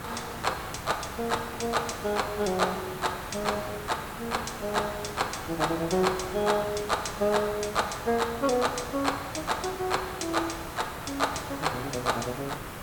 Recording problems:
background hiss; SNR 9 dB

